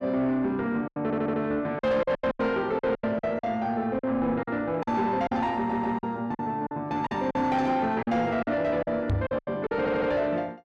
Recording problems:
distorted audio; soft clipping, signal-to-distortion ratio 11 dB
lost packets; 12% of the sound replaced, filled with silence
audio stuttering; at 1 s, at 5.5 s and at 10 s
microphone bump; at 9 s; peak +4 dB vs average level

